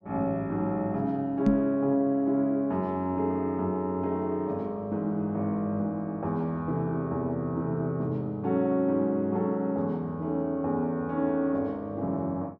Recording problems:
knock on the microphone; at 1.5 s; peak +8 dB vs average level

